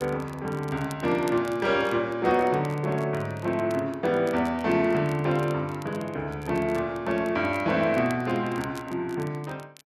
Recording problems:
crackling; vinyl, SNR 24 dB

